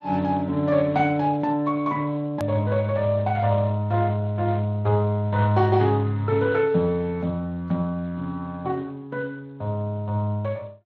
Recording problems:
codec artefacts; Speex, log-spectral distance 2 dB, nothing above 13.1 kHz
hard cut with a click; at 2.5 s

